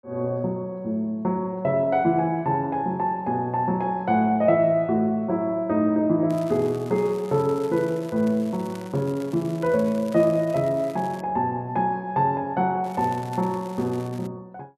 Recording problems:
crackling; from 6.5 to 11 s and from 13 to 14 s; loose cable, SNR 24 dB

